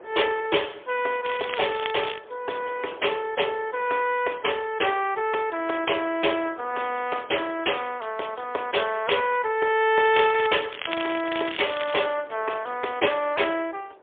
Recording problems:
phone line; 300 Hz to 3.4 kHz, AMR-NB, then MP3
wind noise; below 760 Hz, SNR 23 dB
crackle; at 1 s, at 10 s and from 11 to 12 s; loose cable, SNR 9 dB

